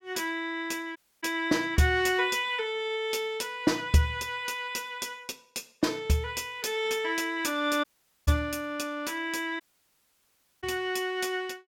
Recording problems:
dropout; at 1 s, at 8 s and at 9.5 s for 1 s

